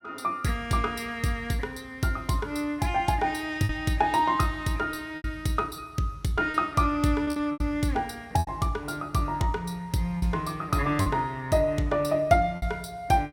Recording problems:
lost packets; 4% of the sound replaced, filled with repeated pitch periods

